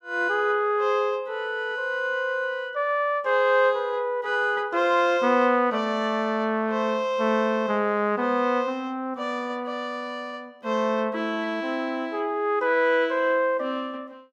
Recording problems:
none

